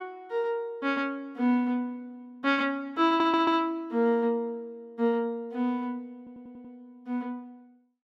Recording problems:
stutter; at 3 s and at 6 s

